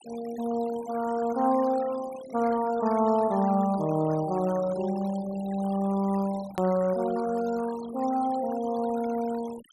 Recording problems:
denoising artefacts; signal-to-artefact ratio 18 dB
click at an edit; at 6.5 s

